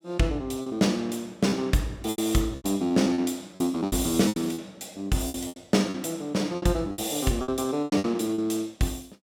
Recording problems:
packet loss; 12% of the sound replaced, filled with repeated pitch periods

